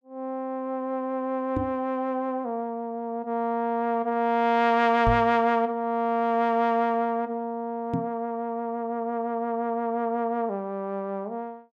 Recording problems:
microphone thump; at 1.5 s, at 5 s and at 8 s; peak +3 dB vs average level

